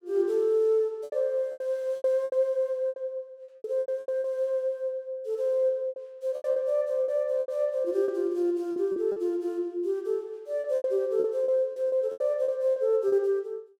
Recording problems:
packet loss; 12% of the sound replaced, filled with repeated pitch periods

